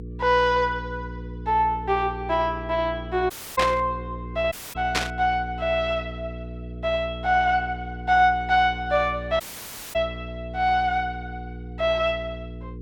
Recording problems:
mains hum; 60 Hz, harmonics up to 480 Hz, SNR 12 dB
dropout; at 3.5 s, at 4.5 s and at 9.5 s for 0.5 s
static burst; at 3.5 s and at 5 s; peak +4 dB vs average level

